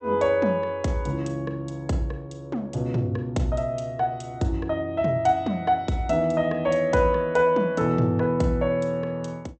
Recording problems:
low-pass filter; nothing above 8 kHz

